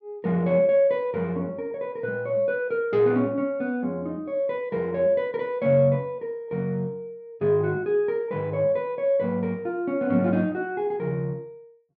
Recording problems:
none

